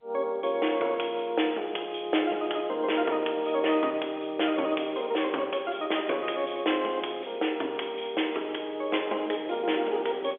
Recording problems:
phone line; 280 Hz to 3.5 kHz, G.711

